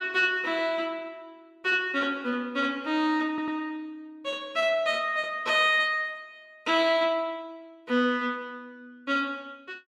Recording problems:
stutter; at 3.5 s

